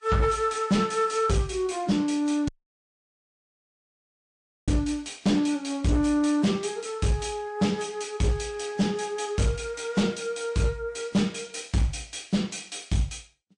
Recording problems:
lossy compression; MP3, then Vorbis, log-spectral distance 4 dB, nothing above 8.5 kHz
distorted audio; hard clipping, uneven, signal-to-distortion ratio 11 dB
audio cutting out; at 2.5 s for 2 s

